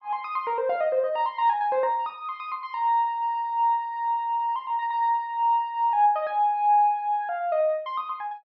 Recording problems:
low-pass filter; nothing above 5.5 kHz

